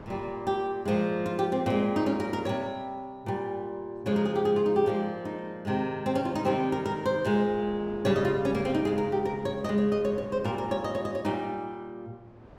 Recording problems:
wind noise; below 710 Hz, SNR 22 dB

